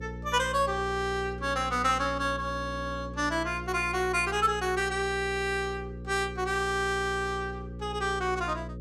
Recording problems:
hum; 60 Hz, harmonics up to 540 Hz, SNR 11 dB

